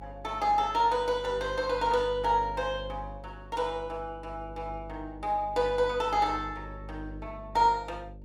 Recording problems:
hum; 50 Hz, harmonics up to 600 Hz, SNR 16 dB

